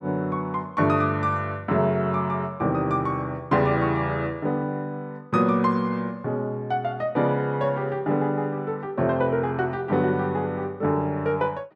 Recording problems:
none

